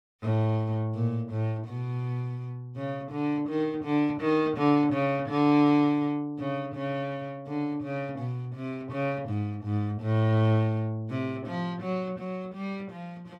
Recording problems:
none

